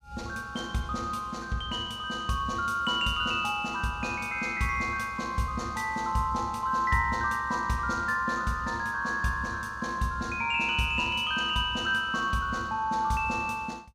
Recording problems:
none

